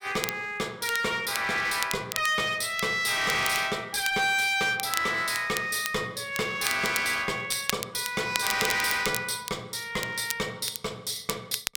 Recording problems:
distorted audio; hard clipping, uneven, signal-to-distortion ratio 7 dB
crackling; vinyl, SNR 9 dB

